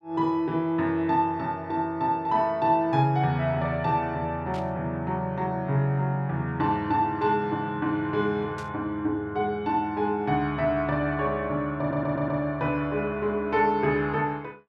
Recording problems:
static burst; at 4.5 s and at 8.5 s; peak -14 dB vs average level
stutter; at 12 s

